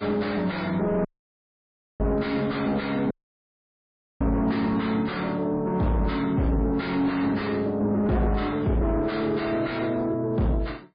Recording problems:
codec artefacts; MP3, log-spectral distance 3 dB, nothing above 4.6 kHz
distorted audio; soft clipping, signal-to-distortion ratio 7 dB
dropout; at 1 s for 1 s and at 3 s for 1 s

